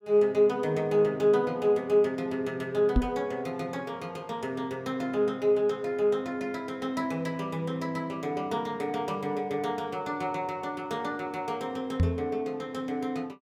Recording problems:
microphone bump; at 3 s and at 12 s; peak +8 dB vs average level

